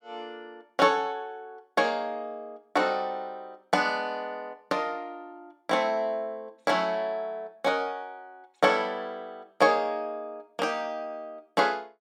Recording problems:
none

